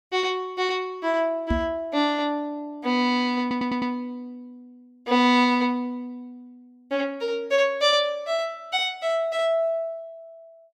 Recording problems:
microphone thump; at 1.5 s; peak +2 dB vs average level
audio stuttering; at 3.5 s

